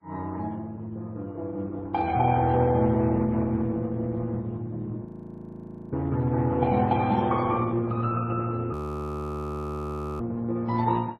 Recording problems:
lossy codec; Opus, then MP3, log-spectral distance 2 dB, nothing above 13.1 kHz
frozen audio; at 5 s for 1 s and at 8.5 s for 1.5 s

